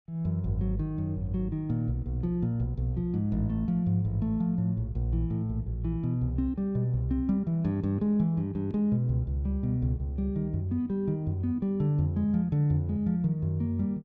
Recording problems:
none

